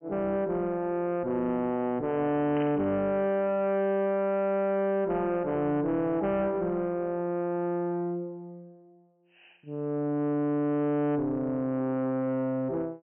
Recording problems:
low-pass filter; nothing above 3.1 kHz
distorted audio; soft clipping, signal-to-distortion ratio 10 dB
static burst; at 2.5 s; peak -11 dB vs average level

